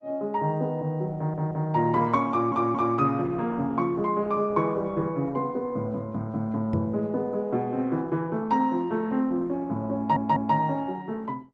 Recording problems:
codec artefacts; Opus, log-spectral distance 2 dB
stutter; at 1 s, at 2.5 s and at 10 s
microphone bump; at 6.5 s; peak +2 dB vs average level

